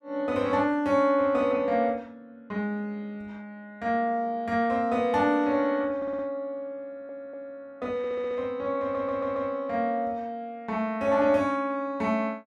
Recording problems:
stutter; 4 times, first at 6 s

